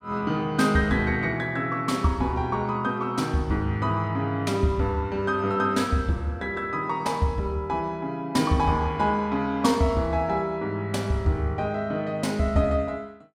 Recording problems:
none

